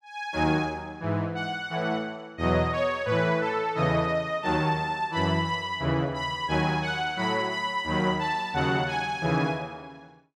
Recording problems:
none

